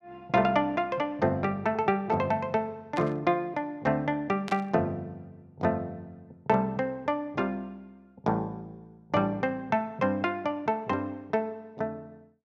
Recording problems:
static burst; at 3 s and at 4.5 s; peak -6 dB vs average level

